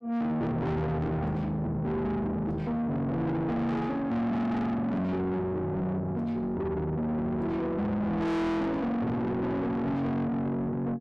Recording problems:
distortion; soft clipping, signal-to-distortion ratio 6 dB

